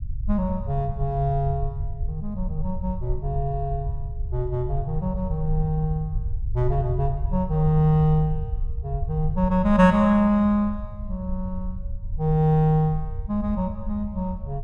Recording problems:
low-frequency rumble; below 74 Hz, SNR 8 dB

